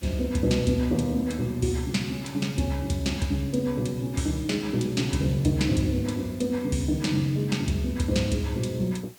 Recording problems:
background hiss; slope -2 dB per octave, SNR 24 dB

